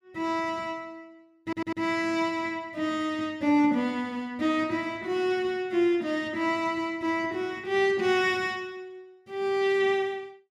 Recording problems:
stutter; at 1.5 s

